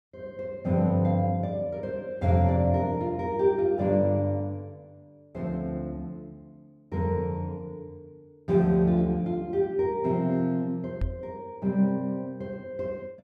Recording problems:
knock on the microphone; at 11 s; peak 0 dB vs average level

